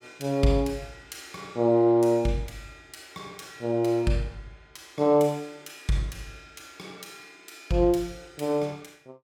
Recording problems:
none

